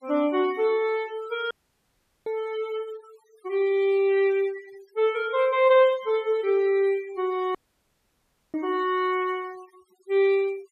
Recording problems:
denoising artefacts; signal-to-artefact ratio 24 dB
audio cutting out; at 1.5 s for 0.5 s and at 7.5 s for 1 s

